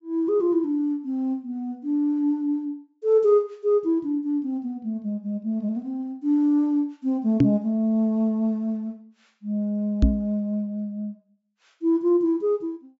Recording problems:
low-pass filter; nothing above 8 kHz
microphone bump; at 7.5 s and at 10 s; peak +10 dB vs average level

